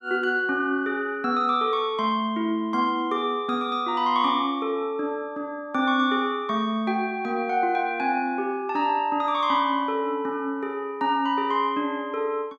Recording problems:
none

